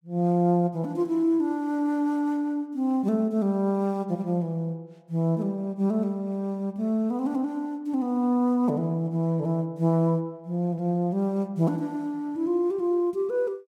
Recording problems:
none

